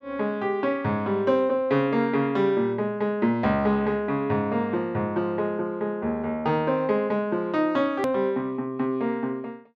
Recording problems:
click at an edit; at 8 s

